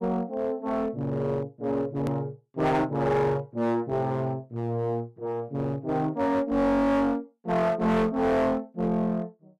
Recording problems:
distorted audio; hard clipping, uneven, signal-to-distortion ratio 7 dB
hard cut with a click; at 2 s

